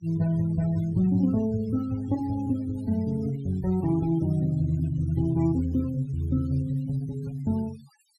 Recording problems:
denoising artefacts; signal-to-artefact ratio 23 dB

